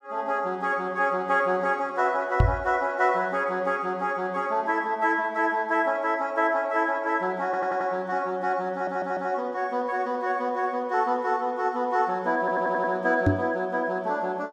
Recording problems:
microphone bump; at 2.5 s and at 13 s; peak +8 dB vs average level
audio stuttering; at 7.5 s, at 8.5 s and at 12 s

